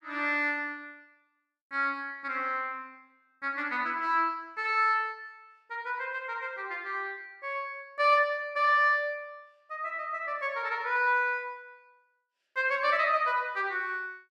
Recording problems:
none

